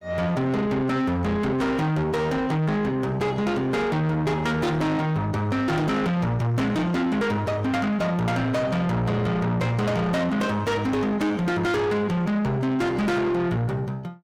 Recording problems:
distortion; soft clipping, signal-to-distortion ratio 8 dB

